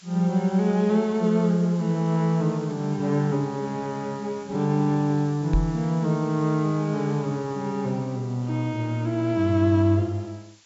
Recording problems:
low-pass filter; nothing above 8 kHz
background hiss; slope +3 dB per octave, SNR 26 dB
microphone bump; at 5.5 s; peak +3 dB vs average level

